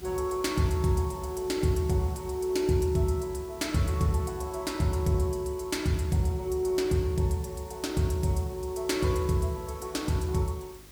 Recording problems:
electrical hum; 50 Hz, harmonics up to 400 Hz, SNR 24 dB
hiss; slope -2 dB per octave, SNR 22 dB

